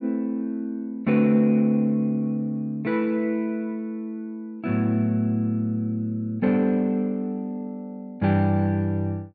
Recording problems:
treble cut off; nothing above 7.1 kHz

